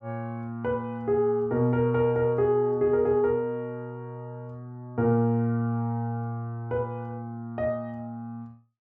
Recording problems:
low-pass filter; nothing above 8 kHz

